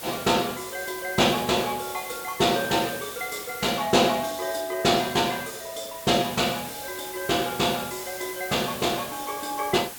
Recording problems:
hiss; slope -1 dB per octave, SNR 11 dB

